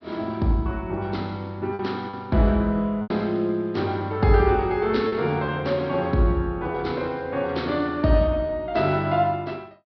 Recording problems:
treble missing; nothing above 5.5 kHz
lost packets; 3% of the sound replaced, filled with repeated pitch periods

